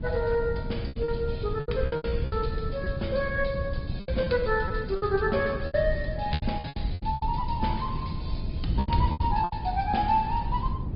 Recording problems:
treble missing; nothing above 5 kHz
lossy codec; Opus, log-spectral distance 4 dB
wind on the microphone; below 130 Hz, SNR 4 dB
lost packets; 12% of the sound replaced, filled with repeated pitch periods

